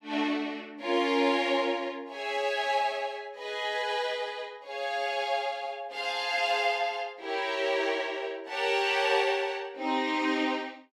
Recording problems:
none

